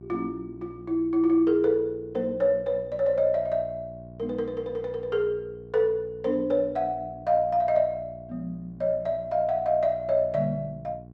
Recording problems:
hum; 60 Hz, harmonics up to 780 Hz, SNR 20 dB

